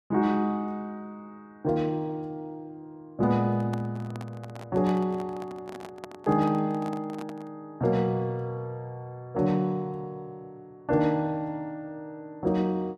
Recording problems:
microphone handling noise; from 3.5 to 7.5 s; peak -6 dB vs average level

